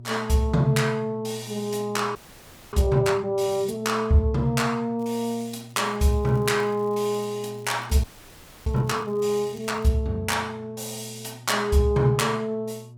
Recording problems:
electrical hum; 60 Hz, harmonics up to 600 Hz, SNR 19 dB
audio freezing; at 2 s for 0.5 s and at 8 s for 0.5 s
crackling; from 5 to 10 s; loose cable, SNR 30 dB

